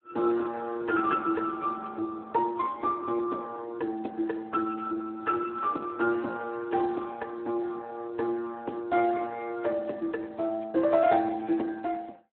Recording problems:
phone line; 260 Hz to 3.2 kHz, Speex

